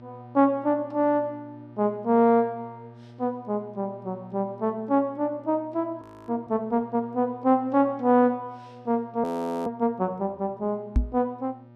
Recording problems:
hum; 60 Hz, harmonics up to 1.3 kHz, SNR 22 dB
frozen audio; at 6 s and at 9 s
microphone bump; at 11 s; peak +6 dB vs average level

